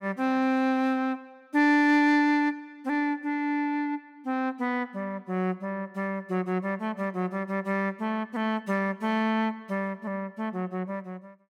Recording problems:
none

